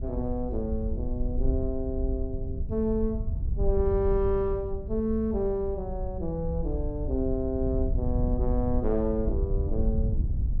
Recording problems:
wind noise; below 76 Hz, SNR 2 dB

